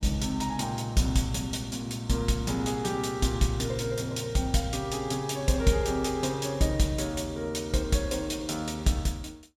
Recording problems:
none

